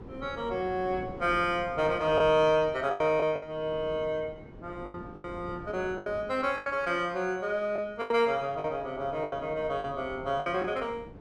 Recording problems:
wind on the microphone; below 420 Hz, SNR 18 dB
lost packets; 8% of the sound replaced, filled with the last packet

